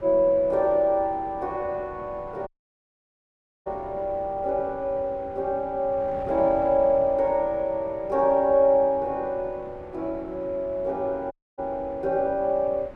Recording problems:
wind on the microphone; below 670 Hz, SNR 20 dB
audio cutting out; at 2.5 s for 1 s and at 11 s

